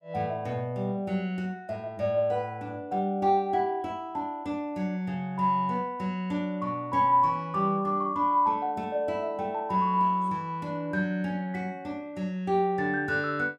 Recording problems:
none

